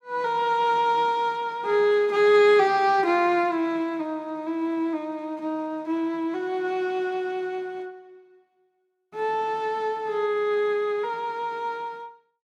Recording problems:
none

